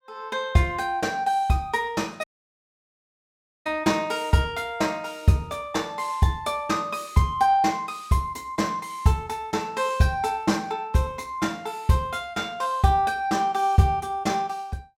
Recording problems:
audio cutting out; at 2 s for 1.5 s

